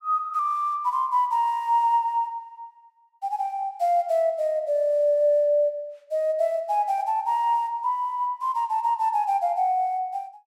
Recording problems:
none

